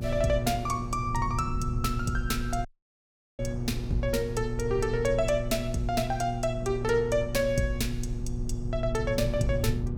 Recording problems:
hum; 60 Hz, harmonics up to 480 Hz, SNR 6 dB
low-frequency rumble; below 100 Hz, SNR 7 dB
wind noise; below 430 Hz, SNR 19 dB
audio cutting out; at 2.5 s for 0.5 s

